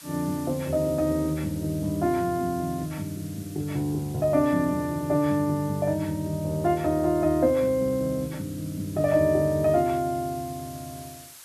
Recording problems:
background hiss; slope +2 dB per octave, SNR 20 dB

